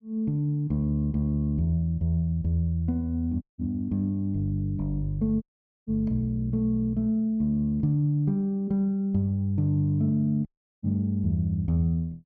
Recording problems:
audio cutting out; at 3.5 s, at 5.5 s and at 10 s

